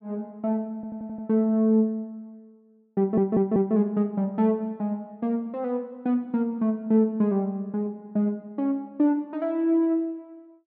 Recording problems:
audio stuttering; at 1 s and at 3 s

